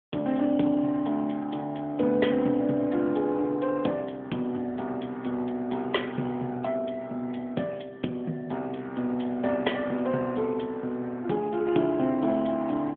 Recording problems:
telephone audio; 170 Hz to 3.5 kHz, AMR-NB

